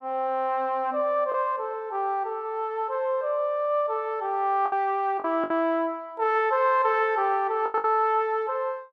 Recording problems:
packet loss; 4% of the sound replaced, filled with the last packet

